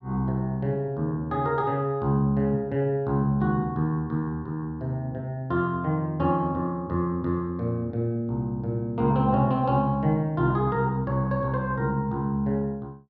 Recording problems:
none

